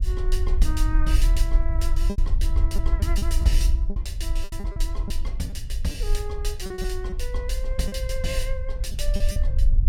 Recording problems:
rumble; below 54 Hz, SNR -7 dB
packet loss; 8% of the sound replaced, filled with repeated pitch periods

